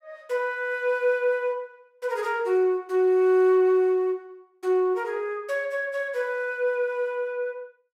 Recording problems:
none

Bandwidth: 16 kHz